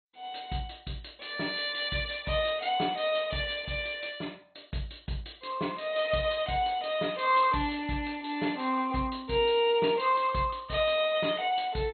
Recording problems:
lossy compression; MP2, log-spectral distance 6 dB, nothing above 4 kHz

